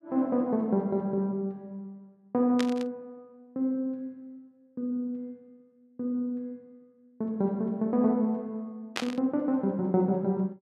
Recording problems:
burst of static; at 2.5 s and at 9 s; peak +2 dB vs average level

